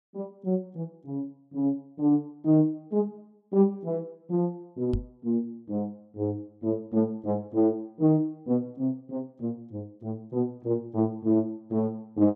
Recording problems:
knock on the microphone; at 5 s; peak +3 dB vs average level

